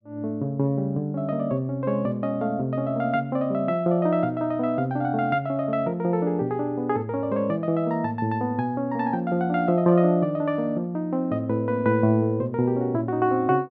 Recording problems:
none

